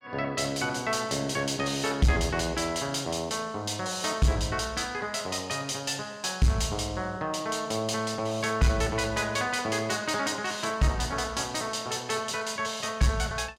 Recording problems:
distortion; soft clipping, signal-to-distortion ratio 11 dB

